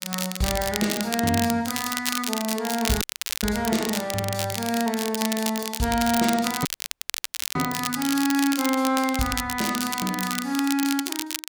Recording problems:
crackling; vinyl, SNR 4 dB
audio cutting out; at 3 s and at 6.5 s for 1 s

